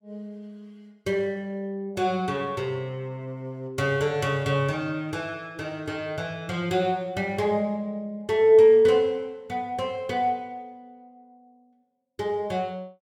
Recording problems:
none

